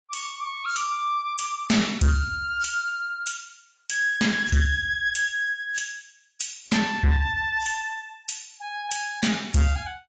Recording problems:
codec artefacts; AAC, log-spectral distance 4 dB, nothing above 7.6 kHz
distortion; soft clipping, signal-to-distortion ratio 8 dB

